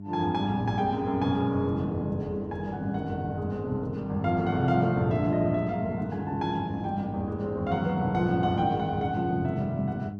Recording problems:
hum; 50 Hz, harmonics up to 400 Hz, SNR 10 dB

